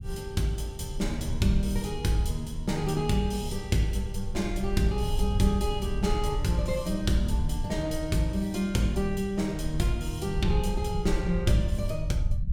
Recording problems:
low-frequency rumble; below 78 Hz, SNR 6 dB

